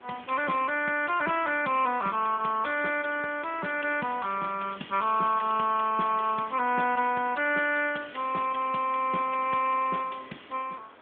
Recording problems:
telephone audio; 190 Hz to 3.4 kHz, AMR-NB
hiss; SNR 25 dB
crackling; at 4.5 s; loose cable, SNR 21 dB

